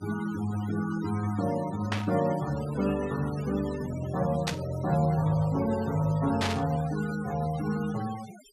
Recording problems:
noise reduction artefacts; signal-to-artefact ratio 15 dB
burst of static; at 2 s, at 4.5 s and at 6.5 s; peak +3 dB vs average level

